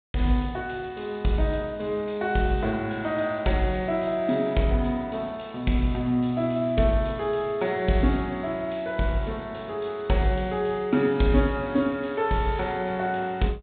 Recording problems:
treble missing; nothing above 4 kHz

